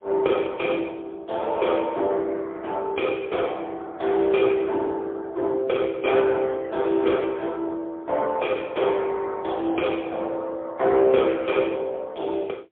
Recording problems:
phone line; 280 Hz to 3.4 kHz, AMR-NB, then MP3

